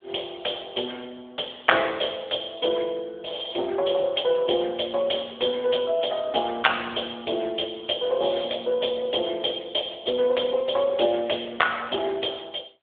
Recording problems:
phone line; 280 Hz to 3.5 kHz, AMR-NB

